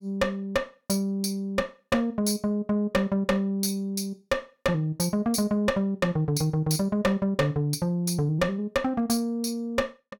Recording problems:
distorted audio; hard clipping, uneven, signal-to-distortion ratio 8 dB

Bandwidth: 17.5 kHz